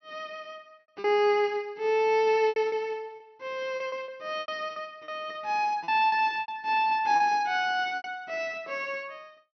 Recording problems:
treble cut off; nothing above 6 kHz
lost packets; 9% of the sound replaced, filled with repeated pitch periods

